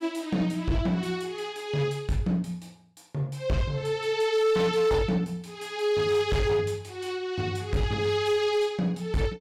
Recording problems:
distortion; hard clipping, uneven, signal-to-distortion ratio 12 dB

